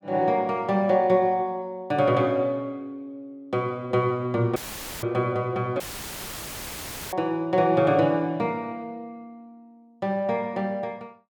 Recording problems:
audio cutting out; at 4.5 s and at 6 s for 1.5 s; filled with static

